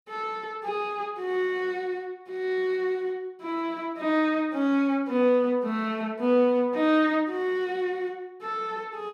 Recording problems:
none

